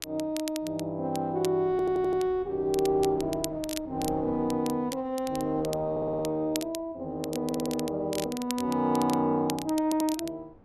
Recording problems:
wind on the microphone; below 540 Hz, SNR 22 dB
crackle; vinyl, SNR 13 dB
audio stuttering; 4 times, first at 1.5 s

